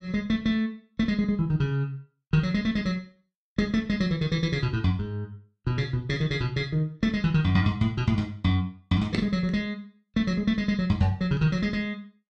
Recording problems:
none

